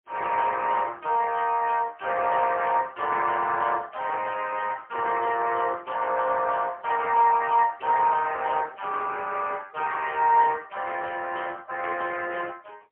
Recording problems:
phone line; 300 Hz to 3.3 kHz, AMR-NB, then MP3

